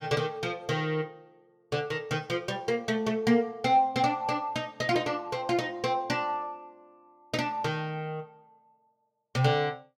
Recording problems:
none

